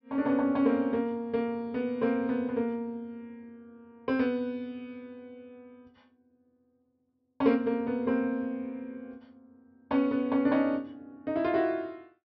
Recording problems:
low-pass filter; nothing above 5.7 kHz

